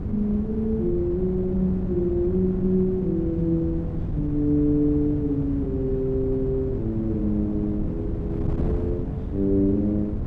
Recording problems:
hum; 50 Hz, harmonics up to 1.1 kHz, SNR 14 dB
wind on the microphone; below 180 Hz, SNR 6 dB

